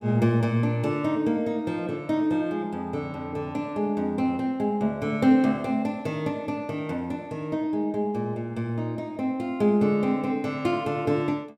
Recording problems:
none

